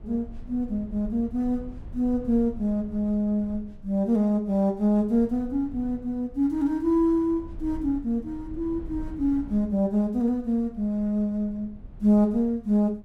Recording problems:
rumble; below 92 Hz, SNR 19 dB

